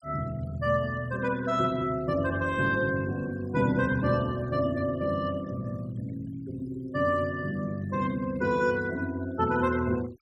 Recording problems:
noise reduction artefacts; signal-to-artefact ratio 23 dB

